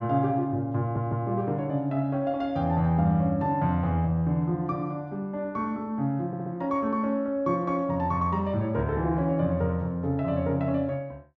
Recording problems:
audio stuttering; at 1 s and at 6.5 s

